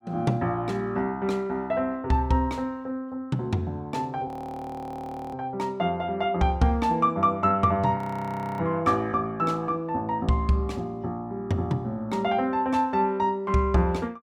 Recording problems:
audio freezing; at 4.5 s for 1 s and at 8 s for 0.5 s

